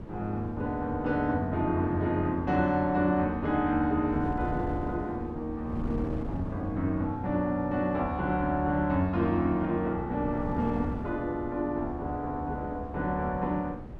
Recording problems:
wind on the microphone; below 270 Hz, SNR 11 dB

